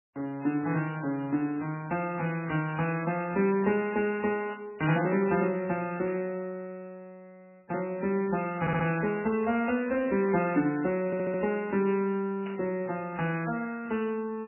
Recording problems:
lossy codec; MP3, log-spectral distance 3 dB, nothing above 2.8 kHz
static burst; 5 times, first at 3 s; peak -11 dB vs average level
audio stuttering; at 8.5 s and at 11 s

